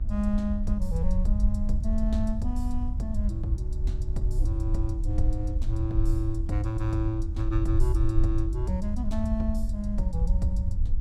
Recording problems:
electrical hum; 50 Hz, harmonics up to 1.2 kHz, SNR 16 dB
low-frequency rumble; below 66 Hz, SNR -2 dB

